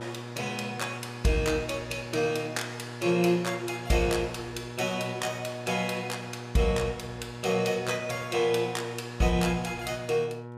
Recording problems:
hum; 60 Hz, harmonics up to 1.8 kHz, SNR 12 dB

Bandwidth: 15.5 kHz